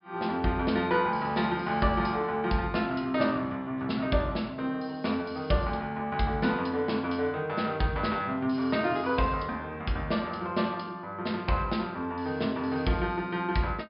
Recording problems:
treble cut off; nothing above 5.5 kHz

